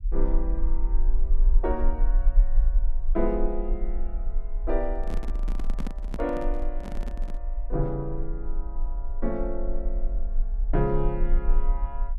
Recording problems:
low-frequency rumble; below 36 Hz, strongest tone 22 Hz, SNR -2 dB
handling noise; from 5 to 7.5 s; peak +1 dB vs average level

